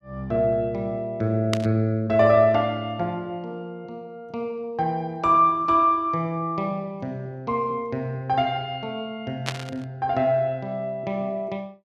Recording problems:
burst of static; at 1.5 s and at 9.5 s; peak +1 dB vs average level

